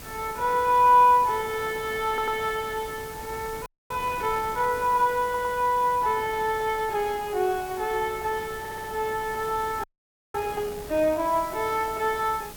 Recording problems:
background hiss; slope +3 dB per octave, SNR 19 dB
wind noise; below 930 Hz, SNR 19 dB
stutter; at 2 s, at 5 s and at 8.5 s
audio freezing; at 3.5 s and at 10 s for 0.5 s

